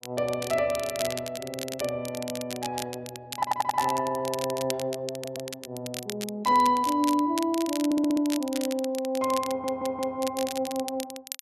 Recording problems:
crackle; vinyl, SNR 10 dB
audio stuttering; 4 times, first at 3.5 s

